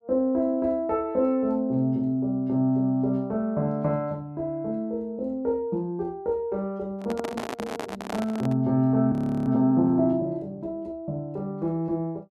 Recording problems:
handling noise; from 7 to 8.5 s; peak -3 dB vs average level
frozen audio; at 9 s

